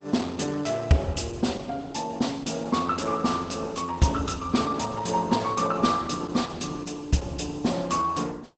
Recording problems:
codec artefacts; Opus, log-spectral distance 5 dB, nothing above 7.8 kHz

